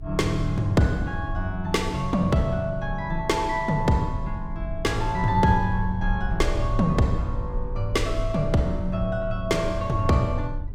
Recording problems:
rumble; below 62 Hz, strongest tone 28 Hz, SNR 9 dB

